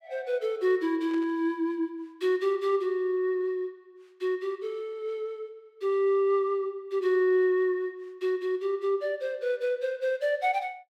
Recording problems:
static burst; at 1 s; peak -15 dB vs average level

